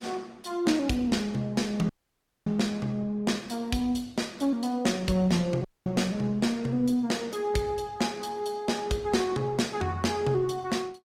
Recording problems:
codec artefacts; Opus, log-spectral distance 3 dB, nothing above 18.9 kHz
audio cutting out; at 2 s for 0.5 s and at 5.5 s

